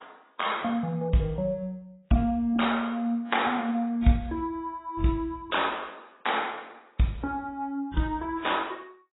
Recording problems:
lossy codec; AAC, then AAC, log-spectral distance 4 dB, nothing above 3.8 kHz

